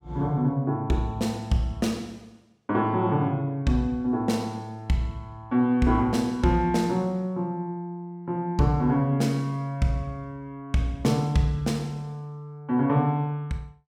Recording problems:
none

